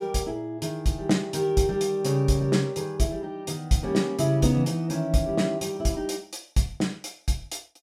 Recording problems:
none

